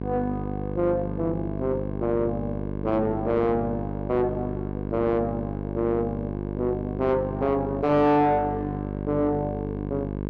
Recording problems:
distortion; soft clipping, signal-to-distortion ratio 7 dB
hum; 50 Hz, harmonics up to 1.1 kHz, SNR 5 dB

